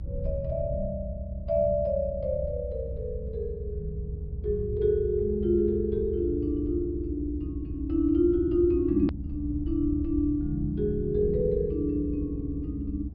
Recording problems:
low-pass filter; nothing above 5.5 kHz
low-frequency rumble; below 92 Hz, SNR 7 dB
hard cut with a click; at 9 s

